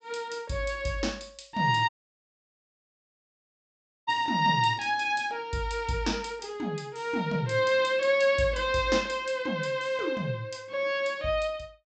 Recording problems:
treble missing; nothing above 8 kHz
dropout; at 2 s for 2 s

